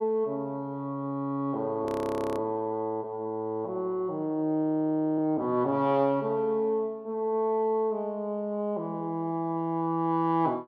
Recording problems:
frozen audio; at 2 s for 0.5 s and at 4.5 s for 0.5 s

